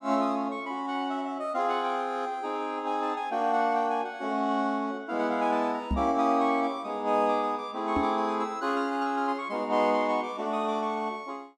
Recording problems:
microphone bump; at 6 s and at 8 s; peak +2 dB vs average level

